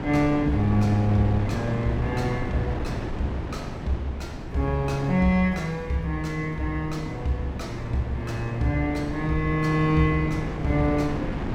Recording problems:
wind on the microphone; below 410 Hz, SNR 7 dB

